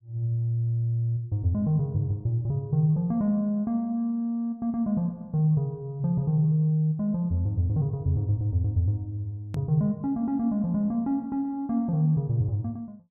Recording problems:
hard cut with a click; at 9.5 s

